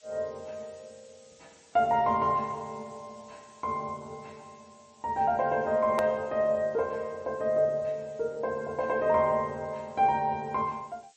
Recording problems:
lossy compression; MP3, log-spectral distance 8 dB, nothing above 13.1 kHz
background hiss; SNR 30 dB
hard cut with a click; at 6 s

